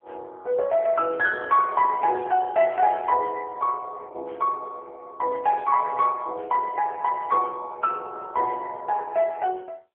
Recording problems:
phone line; 390 Hz to 3.3 kHz, AMR-NB

